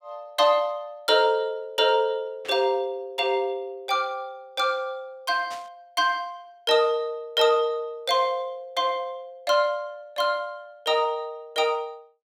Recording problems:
static burst; at 2.5 s and at 5.5 s; peak -12 dB vs average level

